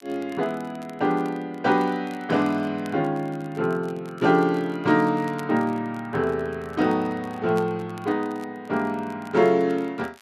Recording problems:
crackle; vinyl, SNR 27 dB

